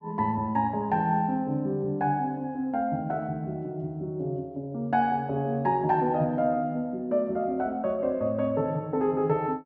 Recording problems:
none

